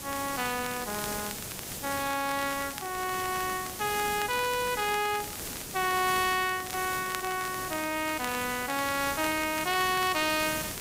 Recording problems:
background hiss; SNR 7 dB
crackle; vinyl, SNR 15 dB

